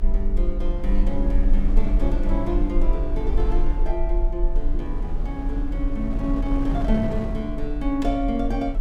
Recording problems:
rumble; below 38 Hz, strongest tone 22 Hz, SNR -1 dB
wind on the microphone; below 320 Hz, SNR 6 dB

